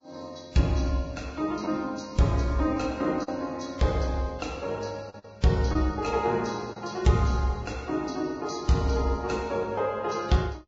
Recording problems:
lossy compression; Vorbis, log-spectral distance 3 dB
packet loss; 1.9% of the sound replaced, filled with the last packet

